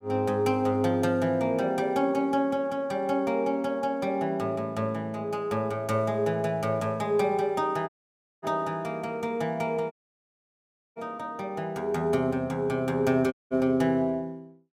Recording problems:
audio cutting out; at 8 s for 0.5 s, at 10 s for 1 s and at 13 s

